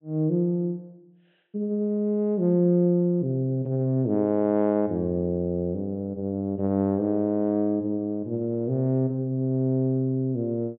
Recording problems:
treble missing; nothing above 3.9 kHz

